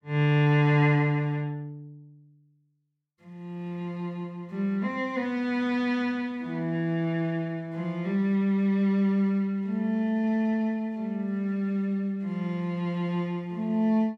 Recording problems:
none

